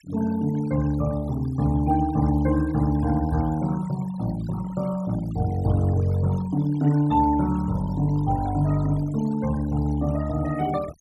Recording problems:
noise reduction artefacts; signal-to-artefact ratio 19 dB

